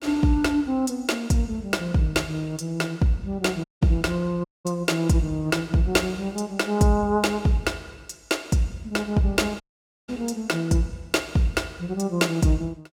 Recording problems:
dropout; at 3.5 s, at 4.5 s and at 9.5 s

